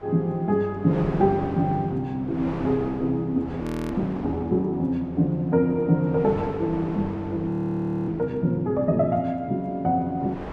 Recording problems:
wind on the microphone; below 840 Hz, SNR 13 dB
frozen audio; at 3.5 s and at 7.5 s for 0.5 s

